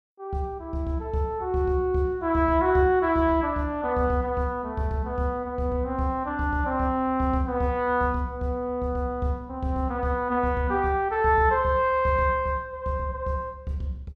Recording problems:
none

